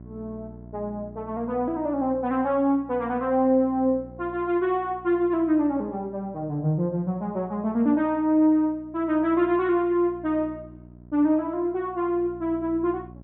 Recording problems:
treble cut off; nothing above 4 kHz
electrical hum; 60 Hz, harmonics up to 720 Hz, SNR 22 dB

